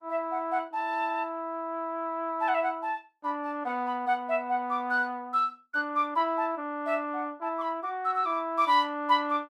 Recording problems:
lossy compression; Opus, log-spectral distance 2 dB, nothing above 18.9 kHz

